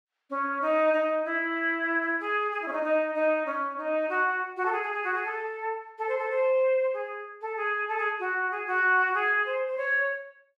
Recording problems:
none

